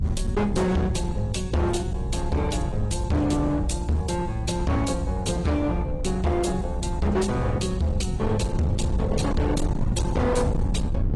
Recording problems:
codec artefacts; AAC, log-spectral distance 3 dB, nothing above 10.4 kHz
distortion; hard clipping, uneven, signal-to-distortion ratio 6 dB
rumble; below 150 Hz, SNR 4 dB

